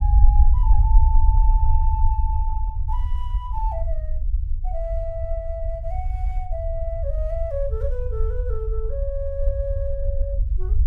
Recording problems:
low-frequency rumble; below 58 Hz, SNR -8 dB

